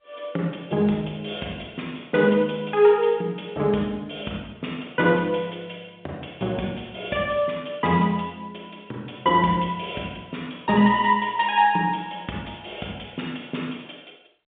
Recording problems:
telephone audio; 220 Hz to 3.7 kHz, G.711

